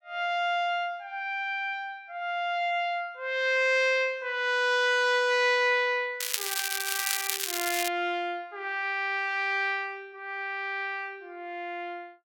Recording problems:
crackle; from 6 to 8 s; loose cable, SNR 1 dB

